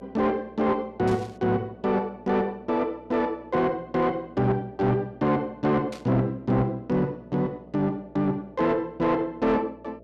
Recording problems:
distortion; soft clipping, signal-to-distortion ratio 10 dB
hum; 60 Hz, harmonics up to 660 Hz, SNR 24 dB
burst of static; at 1 s and at 6 s; peak -12 dB vs average level

